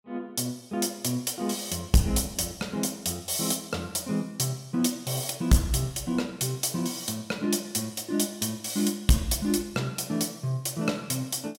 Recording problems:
distortion; hard clipping, uneven, signal-to-distortion ratio 10 dB

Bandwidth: 16.5 kHz